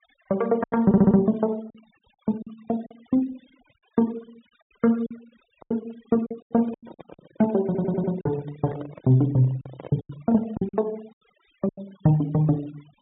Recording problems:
treble missing; nothing above 4 kHz
denoising artefacts; signal-to-artefact ratio 26 dB
packet loss; 10% of the sound replaced, filled with silence
audio stuttering; at 1 s and at 7.5 s
microphone handling noise; from 6.5 to 11 s; peak -10 dB vs average level

